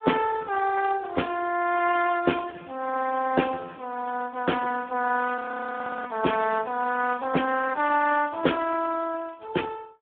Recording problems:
phone line; 280 Hz to 2.7 kHz, Speex
audio freezing; at 5.5 s for 0.5 s

